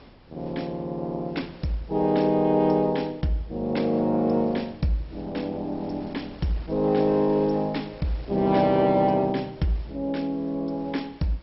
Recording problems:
lossy codec; MP2, log-spectral distance 3 dB, nothing above 5.5 kHz
wind noise; below 850 Hz, SNR 22 dB

